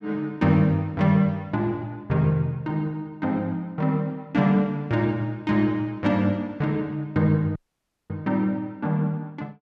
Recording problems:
audio cutting out; at 7.5 s for 0.5 s

